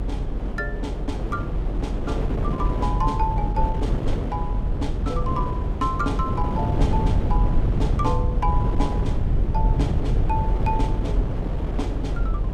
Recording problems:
rumble; below 96 Hz, SNR -4 dB
wind on the microphone; below 480 Hz, SNR 1 dB

